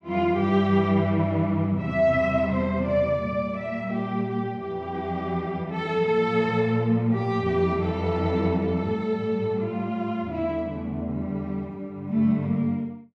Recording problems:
none

